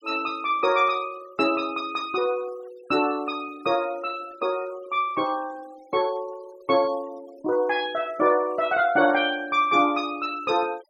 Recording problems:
denoising artefacts; signal-to-artefact ratio 24 dB

